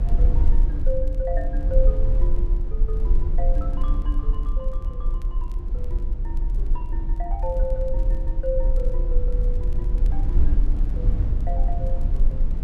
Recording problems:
low-frequency rumble; below 42 Hz, SNR -9 dB
crackle; vinyl, SNR 29 dB

